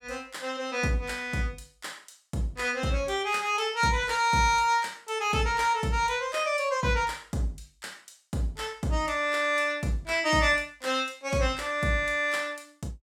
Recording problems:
none

